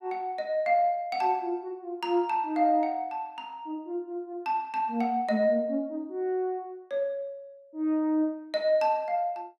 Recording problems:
none

